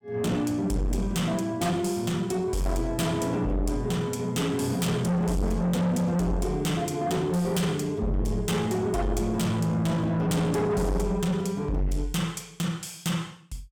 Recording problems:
distortion; soft clipping, signal-to-distortion ratio 7 dB

